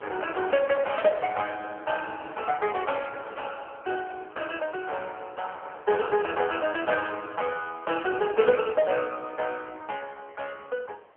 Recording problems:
phone line; 340 Hz to 3.1 kHz, AMR-NB
wind on the microphone; below 1.3 kHz, SNR 18 dB

